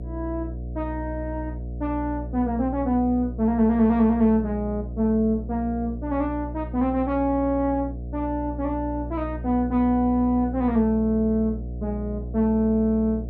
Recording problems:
hum; 60 Hz, harmonics up to 660 Hz, SNR 9 dB

